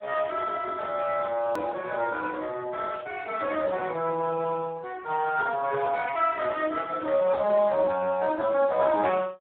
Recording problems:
phone line; 320 Hz to 2.2 kHz, Speex
hard cut with a click; at 1.5 s

